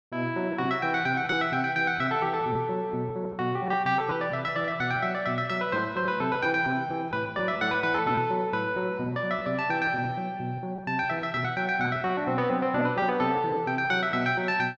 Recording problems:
packet loss; 6% of the sound replaced, filled with repeated pitch periods

